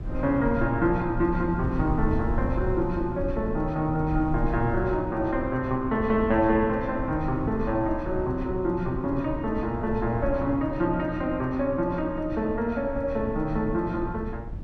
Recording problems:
rumble; below 100 Hz, SNR 9 dB

